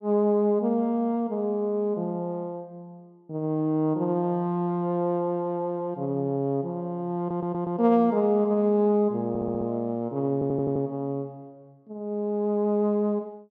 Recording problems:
stutter; at 7 s, at 9.5 s and at 10 s

